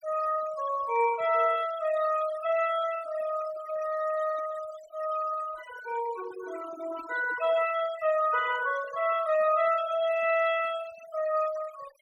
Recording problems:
denoising artefacts; signal-to-artefact ratio 15 dB

